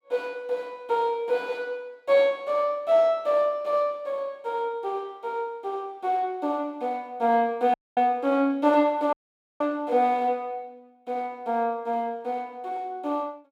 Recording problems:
dropout; at 7.5 s and at 9 s

